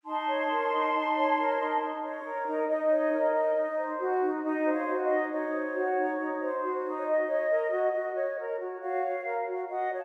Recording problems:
none

